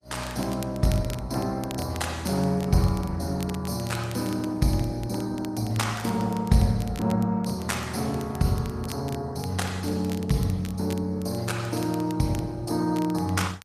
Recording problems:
lossy codec; Opus, log-spectral distance 3 dB, nothing above 14.3 kHz
crackling; vinyl, SNR 18 dB

